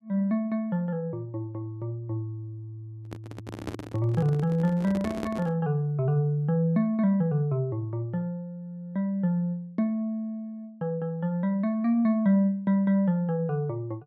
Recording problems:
microphone handling noise; from 3 to 5.5 s; peak -3 dB vs average level

